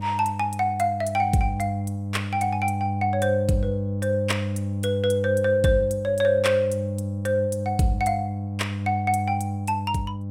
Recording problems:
hum; 50 Hz, harmonics up to 600 Hz, SNR 5 dB

